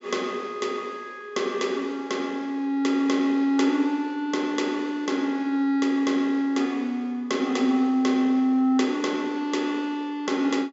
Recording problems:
low-pass filter; nothing above 8 kHz

